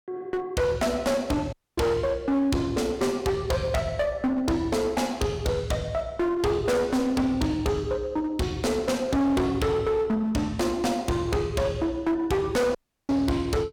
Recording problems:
distorted audio; hard clipping, uneven, signal-to-distortion ratio 6 dB
audio cutting out; at 1.5 s and at 13 s

